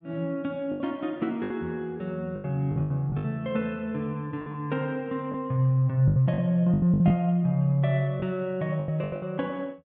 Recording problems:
packet loss; 11% of the sound replaced, filled with the last packet

